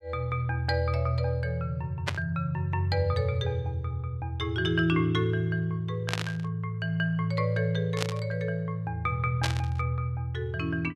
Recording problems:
static burst; 4 times, first at 2 s; peak +4 dB vs average level

